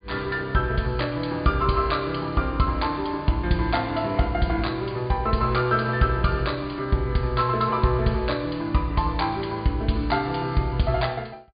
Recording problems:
treble missing; nothing above 4.8 kHz

